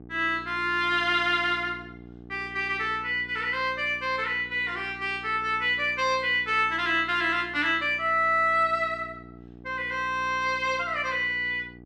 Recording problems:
hum; 60 Hz, harmonics up to 900 Hz, SNR 21 dB

